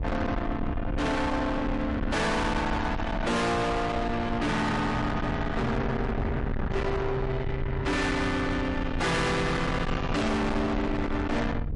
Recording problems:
codec artefacts; MP3, log-spectral distance 2 dB, nothing above 11 kHz
distortion; soft clipping, signal-to-distortion ratio 6 dB
rumble; below 590 Hz, SNR 4 dB

